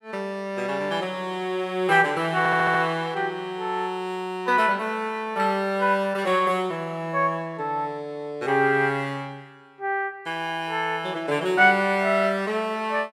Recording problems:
stutter; at 2.5 s

